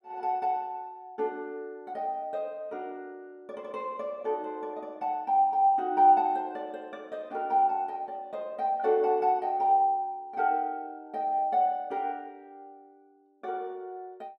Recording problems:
none

